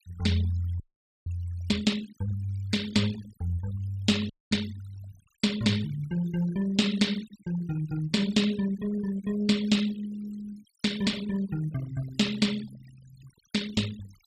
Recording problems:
denoising artefacts; signal-to-artefact ratio 16 dB
audio freezing; at 1 s and at 4.5 s

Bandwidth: 15 kHz